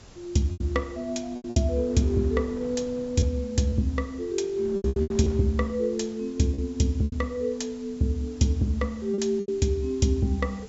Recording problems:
treble missing; nothing above 8 kHz
hiss; slope +2 dB per octave, SNR 27 dB
wind noise; below 550 Hz, SNR 21 dB
lost packets; 7% of the sound replaced, filled with repeated pitch periods

